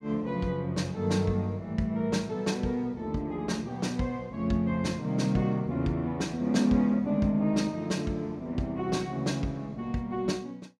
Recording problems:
none

